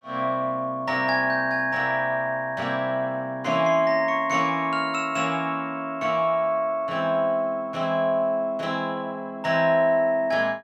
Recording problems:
none

